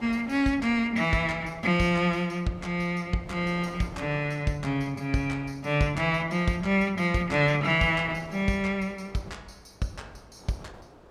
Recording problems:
wind on the microphone; below 930 Hz, SNR 23 dB

